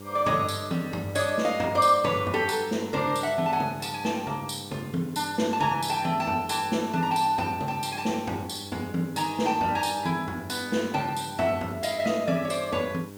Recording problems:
mains hum; 50 Hz, harmonics up to 1.5 kHz, SNR 16 dB
hiss; slope -2 dB per octave, SNR 24 dB

